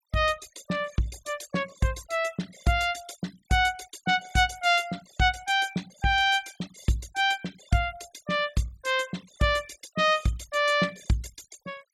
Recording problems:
noise reduction artefacts; signal-to-artefact ratio 21 dB

